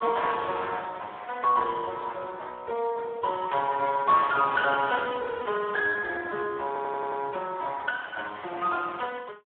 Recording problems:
phone line; 370 Hz to 3 kHz, Speex
audio stuttering; at 6.5 s

